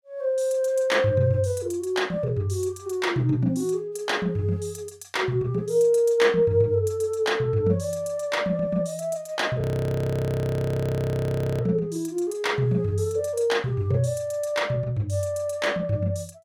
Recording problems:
audio freezing; at 9.5 s for 2 s

